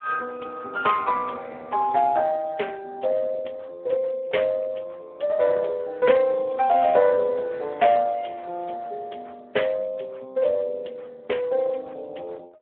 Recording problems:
telephone audio; 320 Hz to 2.8 kHz, Speex

